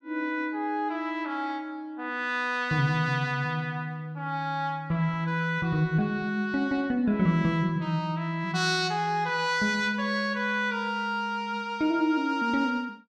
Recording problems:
none

